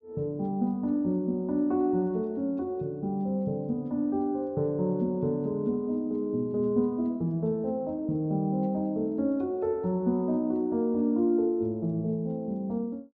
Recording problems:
treble cut off; nothing above 8 kHz

